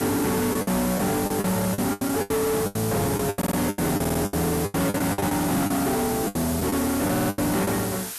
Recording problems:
distortion; soft clipping, signal-to-distortion ratio 7 dB
background hiss; slope +2 dB per octave, SNR 7 dB
packet loss; 15% of the sound replaced, filled with the last packet
audio stuttering; at 3.5 s, at 4 s and at 7 s

